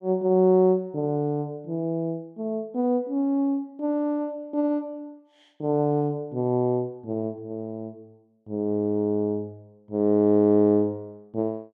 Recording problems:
none

